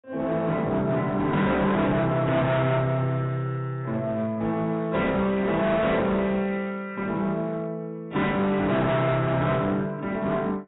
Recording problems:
codec artefacts; AAC, log-spectral distance 2 dB, nothing above 3.8 kHz
distortion; hard clipping, uneven, signal-to-distortion ratio 7 dB

